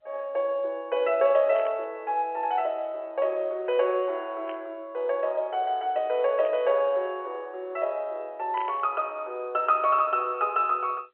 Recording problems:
phone line; 340 Hz to 3.3 kHz, G.711
burst of static; 4 times, first at 1.5 s; peak -11 dB vs average level

